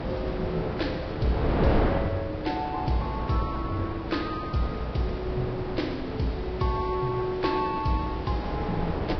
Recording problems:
lossy codec; Vorbis, log-spectral distance 5 dB, nothing above 5.2 kHz
hum; 60 Hz, harmonics up to 480 Hz, SNR 19 dB
hiss; slope -5 dB per octave, SNR 16 dB
wind on the microphone; below 620 Hz, SNR 2 dB

